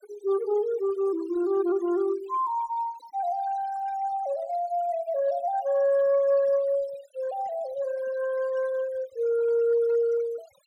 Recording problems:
noise reduction artefacts; signal-to-artefact ratio 21 dB

